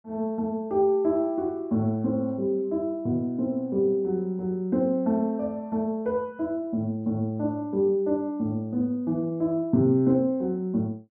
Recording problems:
none

